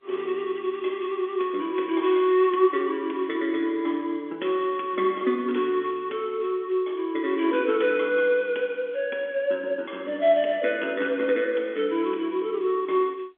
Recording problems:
telephone audio; 240 Hz to 3.5 kHz, G.711

